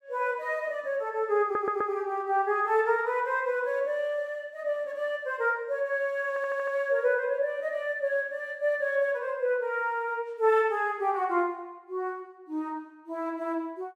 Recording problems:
audio stuttering; at 1.5 s and at 6.5 s

